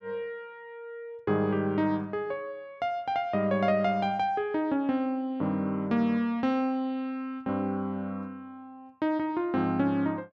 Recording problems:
none

